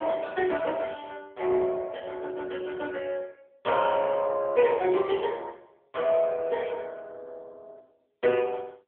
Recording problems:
telephone audio; 320 Hz to 3.4 kHz, AMR-NB

